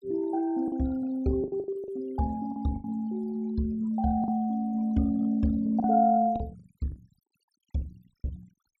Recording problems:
denoising artefacts; signal-to-artefact ratio 26 dB
packet loss; 8% of the sound replaced, filled with the last packet

